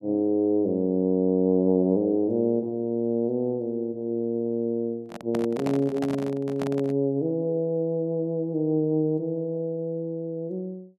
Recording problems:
microphone handling noise; from 5 to 7 s; peak -3 dB vs average level

